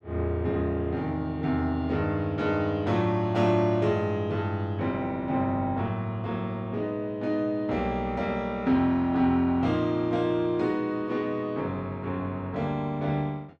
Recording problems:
none

